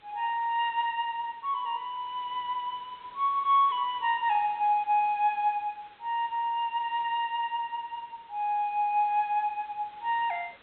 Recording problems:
treble missing; nothing above 3.9 kHz
background hiss; SNR 27 dB

